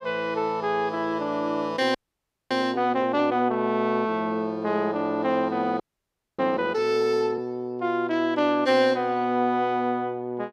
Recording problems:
audio freezing; at 2 s for 0.5 s and at 6 s for 0.5 s

